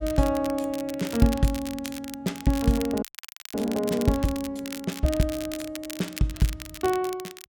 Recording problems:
crackling; vinyl, SNR 12 dB
frozen audio; at 3 s for 0.5 s

